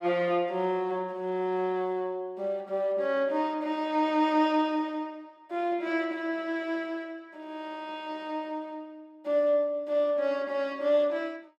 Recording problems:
none

